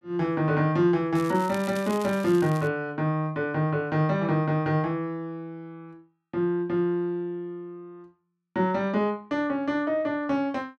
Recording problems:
crackling; from 1 to 2.5 s; loose cable, SNR 18 dB

